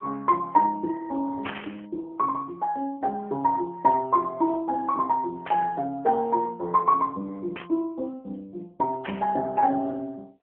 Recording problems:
telephone audio; 240 Hz to 2.2 kHz, AMR-NB
burst of static; 4 times, first at 1.5 s; peak -4 dB vs average level

